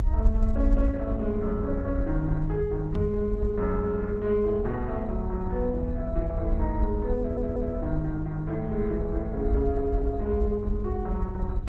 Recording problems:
codec artefacts; Opus, log-spectral distance 2 dB
hum; 50 Hz, harmonics up to 500 Hz, SNR 10 dB
rumble; below 64 Hz, SNR 3 dB
knock on the microphone; at 3 s; peak +5 dB vs average level
stutter; at 7 s

